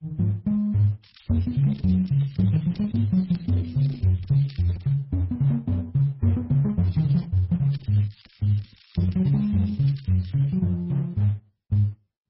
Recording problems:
lossy codec; Opus, then MP3, log-spectral distance 4 dB, nothing above 13.1 kHz
crackling; from 1 to 5 s, at 7 s and from 7.5 to 11 s; loose cable, SNR 27 dB

